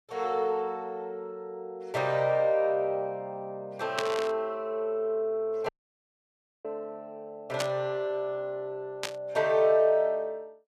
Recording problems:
burst of static; at 4 s, at 7.5 s and at 9 s; peak +3 dB vs average level
dropout; at 5.5 s for 1 s

